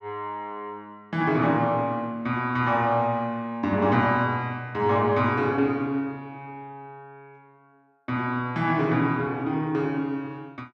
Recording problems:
none

